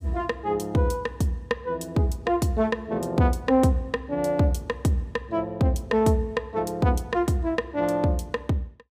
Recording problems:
none

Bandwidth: 15.5 kHz